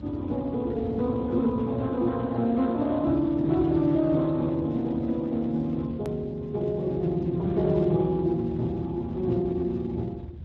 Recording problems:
lossy codec; Speex, log-spectral distance 2 dB, nothing above 13.1 kHz
low-frequency rumble; below 190 Hz, SNR 14 dB
hard cut with a click; at 6 s

